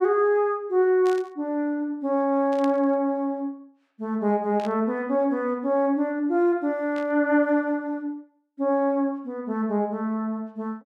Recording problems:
static burst; 4 times, first at 1 s; peak -11 dB vs average level

